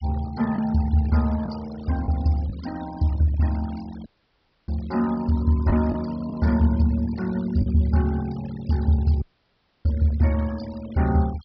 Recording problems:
treble missing; nothing above 5.5 kHz
noise reduction artefacts; signal-to-artefact ratio 20 dB
packet loss; 1.8% of the sound replaced, filled with the last packet
audio cutting out; at 4 s for 0.5 s and at 9 s for 0.5 s

